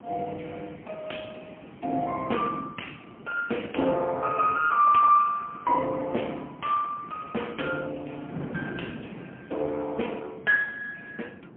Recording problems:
phone line; 190 Hz to 3.2 kHz, AMR-NB, then MP3
wind noise; below 420 Hz, SNR 17 dB

